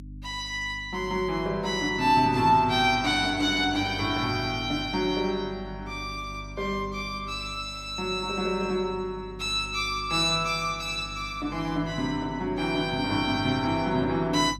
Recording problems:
electrical hum; 50 Hz, harmonics up to 300 Hz, SNR 17 dB

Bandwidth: 15.5 kHz